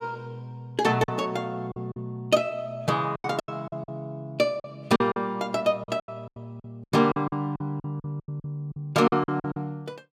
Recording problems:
lost packets; 13% of the sound replaced, filled with silence

